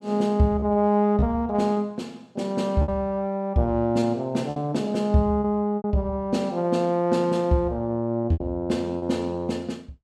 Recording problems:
lost packets; 5% of the sound replaced, filled with repeated pitch periods

